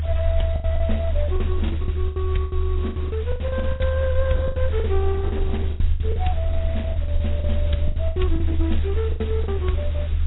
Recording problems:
lossy compression; Opus, then AAC, log-spectral distance 8 dB, nothing above 3.8 kHz
hiss; SNR 18 dB
rumble; below 78 Hz, strongest tone 76 Hz, SNR -5 dB
lost packets; 16% of the sound replaced, filled with the last packet

